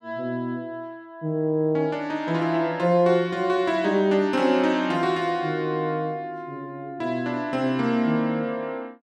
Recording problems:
none

